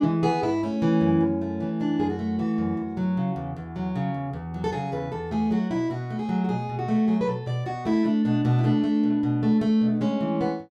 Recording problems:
none

